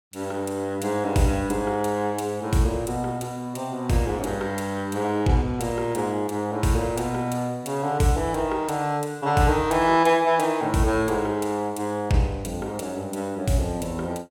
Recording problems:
none

